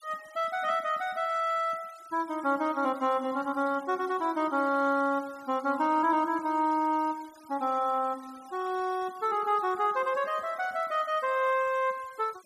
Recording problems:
denoising artefacts; signal-to-artefact ratio 24 dB

